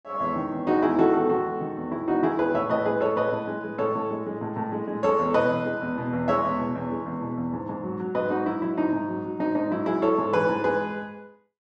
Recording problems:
none

